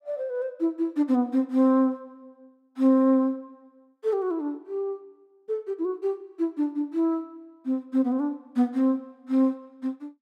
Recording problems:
none

